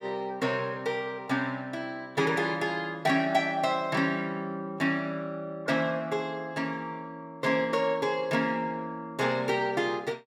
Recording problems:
none

